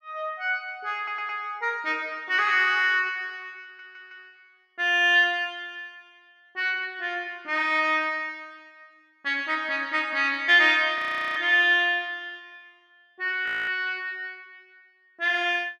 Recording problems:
stutter; at 1 s and at 3.5 s
audio freezing; at 11 s and at 13 s

